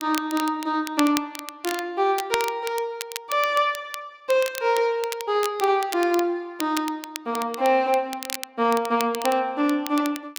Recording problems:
crackling; vinyl, SNR 11 dB

